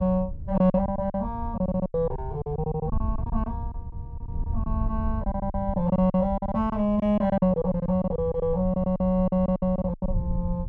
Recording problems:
wind noise; below 92 Hz, SNR 8 dB
lost packets; 16% of the sound replaced, filled with silence

